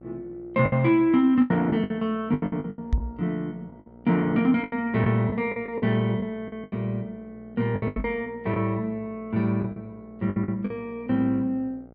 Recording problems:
mains hum; 60 Hz, harmonics up to 1.4 kHz, SNR 25 dB
lost packets; 11% of the sound replaced, filled with the last packet
microphone thump; at 3 s and at 8 s; peak +5 dB vs average level

